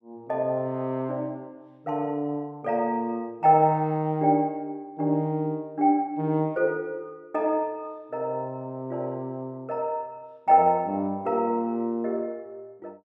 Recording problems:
none

